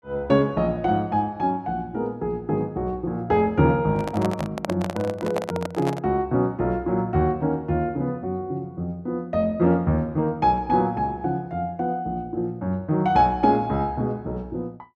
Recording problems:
handling noise; from 4 to 6 s; peak +1 dB vs average level

